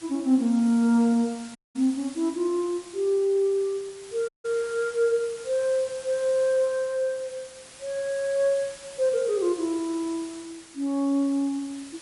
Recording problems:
lossy compression; MP3, log-spectral distance 5 dB, nothing above 11 kHz
hiss; slope 0 dB per octave, SNR 19 dB
dropout; at 1.5 s and at 4.5 s

